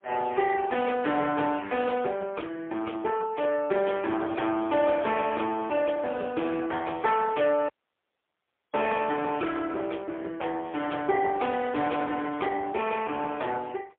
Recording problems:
telephone audio; 280 Hz to 3.4 kHz, AMR-NB, then MP3
audio cutting out; at 7.5 s for 1 s

